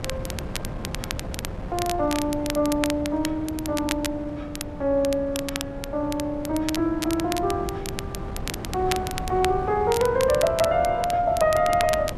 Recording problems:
wind on the microphone; below 390 Hz, SNR 11 dB
crackle; vinyl, SNR 10 dB

